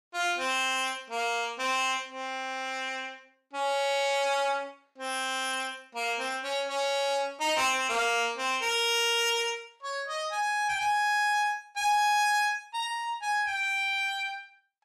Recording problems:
distortion; soft clipping, signal-to-distortion ratio 10 dB

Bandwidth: 14.5 kHz